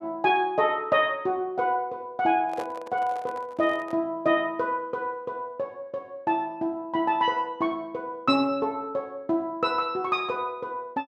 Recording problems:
handling noise; from 2.5 to 4 s; peak -6 dB vs average level

